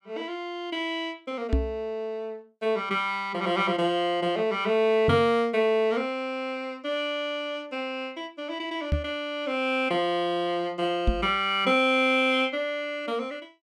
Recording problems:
microphone thump; 4 times, first at 1.5 s; peak +5 dB vs average level

